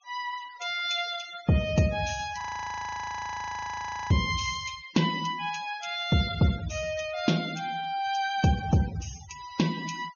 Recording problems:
low-pass filter; nothing above 6.7 kHz
denoising artefacts; signal-to-artefact ratio 16 dB
frozen audio; at 2.5 s for 1.5 s

